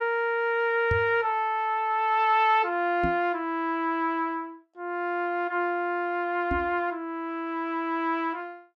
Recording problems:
knock on the microphone; at 1 s, at 3 s and at 6.5 s; peak 0 dB vs average level

